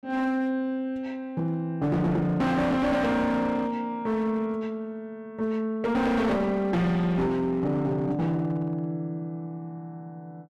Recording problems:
distortion; hard clipping, uneven, signal-to-distortion ratio 8 dB

